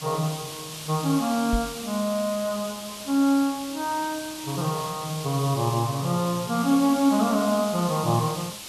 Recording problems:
background hiss; SNR 11 dB
microphone bump; at 1.5 s; peak 0 dB vs average level

